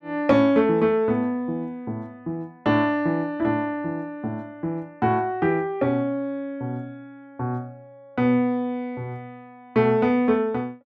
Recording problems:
none

